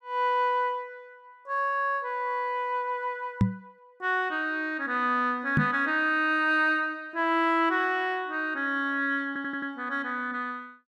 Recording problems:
knock on the microphone; at 3.5 s and at 5.5 s; peak +7 dB vs average level
stutter; at 9.5 s

